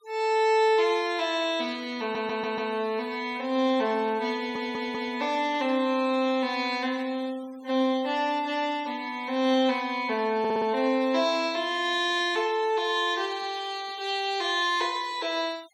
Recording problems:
denoising artefacts; signal-to-artefact ratio 22 dB
audio stuttering; at 2 s, at 4.5 s and at 10 s

